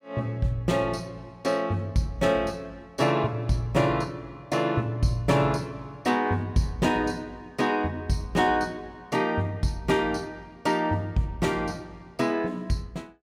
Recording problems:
none

